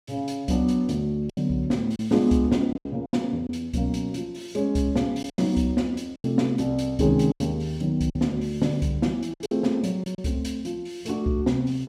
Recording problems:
packet loss; 6% of the sound replaced, filled with silence

